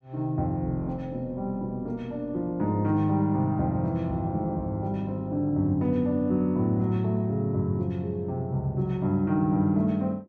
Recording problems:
none

